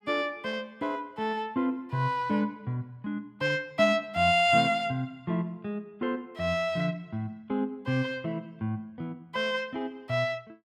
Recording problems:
none

